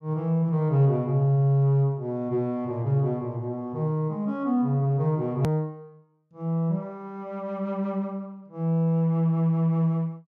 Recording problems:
edit click; at 5.5 s

